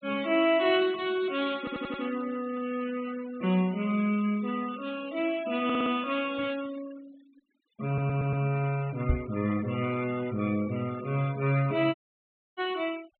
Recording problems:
treble cut off; nothing above 4 kHz
noise reduction artefacts; signal-to-artefact ratio 19 dB
stutter; at 1.5 s, at 5.5 s and at 8 s
knock on the microphone; at 9 s; peak +6 dB vs average level
dropout; at 12 s for 0.5 s

